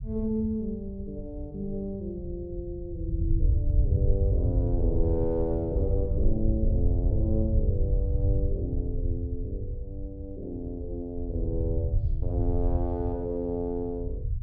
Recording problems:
low-frequency rumble; below 94 Hz, SNR -4 dB

